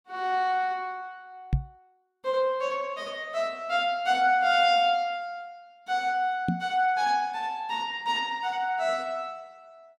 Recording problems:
knock on the microphone; at 1.5 s and at 6.5 s; peak +5 dB vs average level

